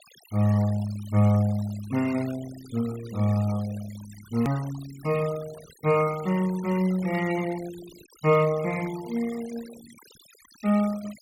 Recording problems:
denoising artefacts; signal-to-artefact ratio 19 dB
edit click; at 4.5 s

